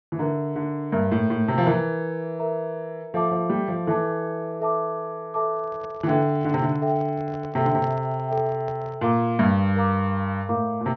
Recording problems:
low-pass filter; nothing above 6.1 kHz
handling noise; from 5.5 to 9 s; peak -10 dB vs average level

